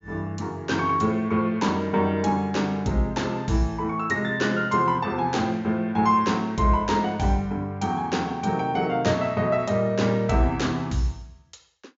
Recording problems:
treble missing; nothing above 7.3 kHz

